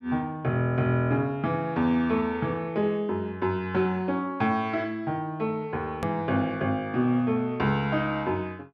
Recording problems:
edit click; at 6 s

